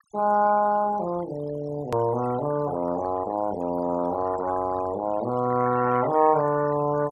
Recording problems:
denoising artefacts; signal-to-artefact ratio 16 dB
edit click; at 2 s

